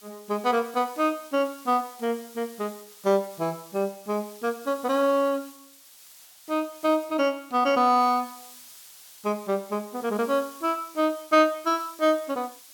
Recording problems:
background hiss; slope +3 dB per octave, SNR 20 dB

